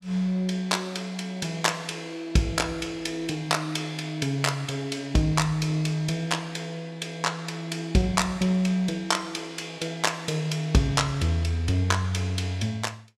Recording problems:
none

